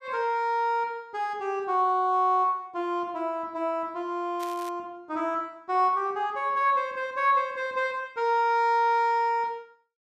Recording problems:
crackle; at 4.5 s; loose cable, SNR 21 dB

